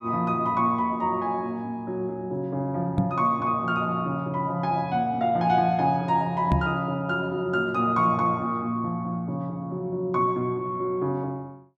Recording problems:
microphone thump; at 3 s and at 6.5 s; peak +6 dB vs average level

